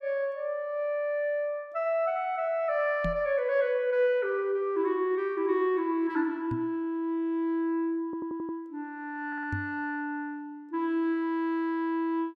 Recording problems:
knock on the microphone; at 3 s, at 6.5 s and at 9.5 s; peak -1 dB vs average level
audio stuttering; at 8 s and at 9.5 s

